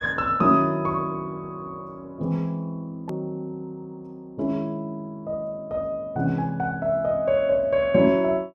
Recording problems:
edit click; at 3 s

